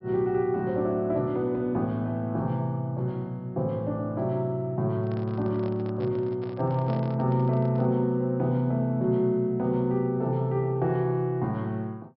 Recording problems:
treble missing; nothing above 5.4 kHz
handling noise; from 5 to 8 s; peak -9 dB vs average level

